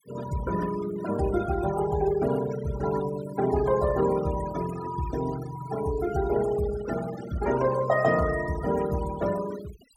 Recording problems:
noise reduction artefacts; signal-to-artefact ratio 13 dB

